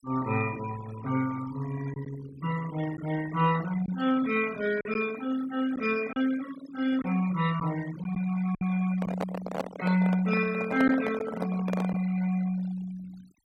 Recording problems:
denoising artefacts; signal-to-artefact ratio 15 dB
packet loss; 2% of the sound replaced, filled with silence
microphone handling noise; from 9 to 12 s; peak +1 dB vs average level

